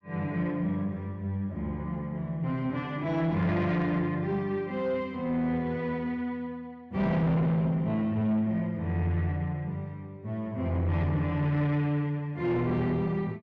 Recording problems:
distortion; soft clipping, signal-to-distortion ratio 11 dB

